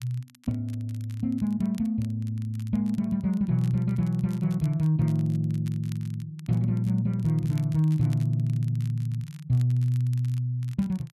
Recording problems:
crackle; vinyl, SNR 27 dB

